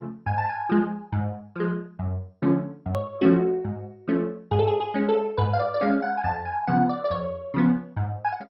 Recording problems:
lossy compression; MP2, log-spectral distance 2 dB, nothing above 16.1 kHz
click at an edit; at 3 s

